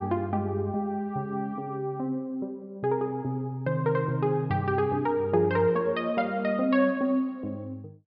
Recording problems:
treble cut off; nothing above 5.5 kHz

